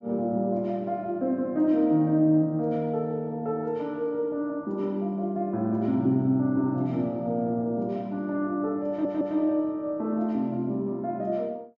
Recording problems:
treble missing; nothing above 8 kHz
audio stuttering; at 9 s

